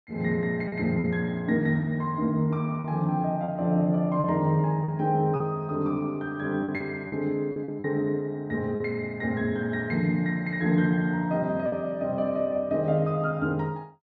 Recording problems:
lost packets; 4% of the sound replaced, filled with repeated pitch periods

